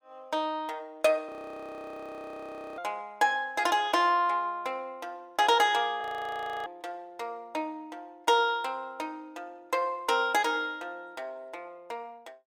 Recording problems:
audio freezing; at 1.5 s for 1.5 s and at 6 s for 0.5 s

